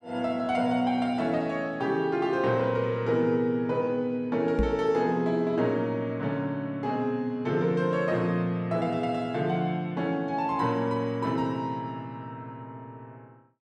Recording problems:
microphone bump; at 4.5 s; peak +3 dB vs average level

